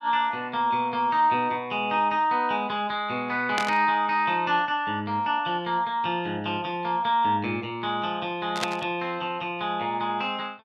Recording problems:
static burst; at 3.5 s and at 8.5 s; peak +2 dB vs average level

